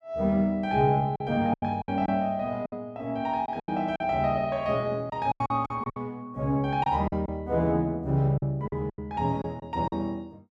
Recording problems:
lost packets; 9% of the sound replaced, filled with silence

